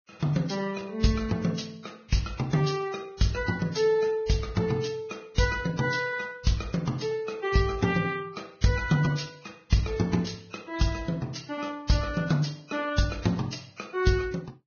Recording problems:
codec artefacts; Vorbis, log-spectral distance 5 dB, nothing above 6.3 kHz

